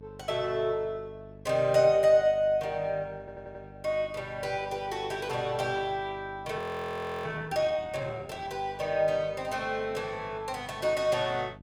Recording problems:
hum; 50 Hz, harmonics up to 650 Hz, SNR 21 dB
audio stuttering; at 3 s
frozen audio; at 6.5 s for 0.5 s

